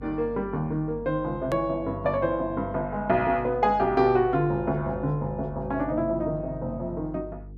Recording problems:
hum; 50 Hz, harmonics up to 450 Hz, SNR 17 dB
edit click; at 1.5 s

